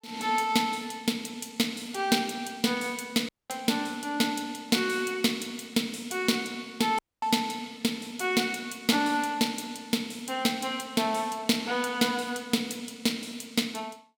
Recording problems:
dropout; at 3.5 s and at 7 s

